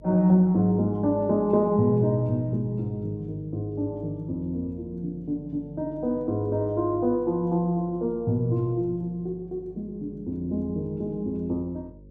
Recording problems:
mains hum; 50 Hz, harmonics up to 550 Hz, SNR 23 dB

